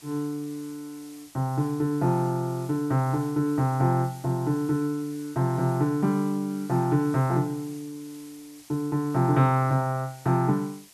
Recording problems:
hiss; SNR 23 dB

